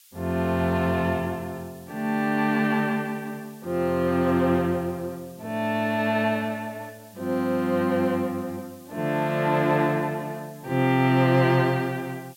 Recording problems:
background hiss; SNR 26 dB

